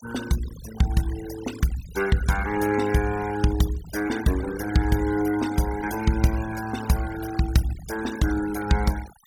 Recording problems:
denoising artefacts; signal-to-artefact ratio 13 dB

